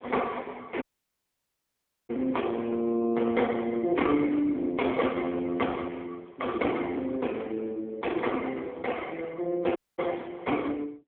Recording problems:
phone line; 190 Hz to 3.3 kHz, AMR-NB
audio cutting out; at 1 s for 1.5 s and at 10 s

